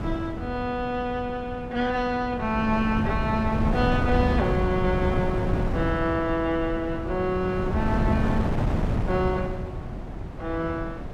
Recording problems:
wind noise; below 280 Hz, SNR 2 dB

